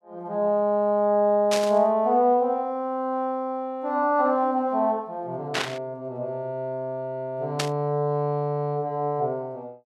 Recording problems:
static burst; at 1.5 s, at 5.5 s and at 7.5 s; peak +2 dB vs average level

